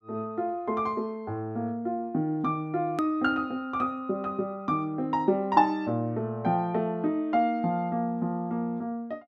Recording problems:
click at an edit; at 3 s

